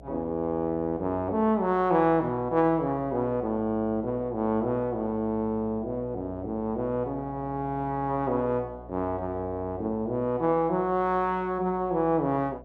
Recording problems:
hum; 60 Hz, harmonics up to 720 Hz, SNR 20 dB

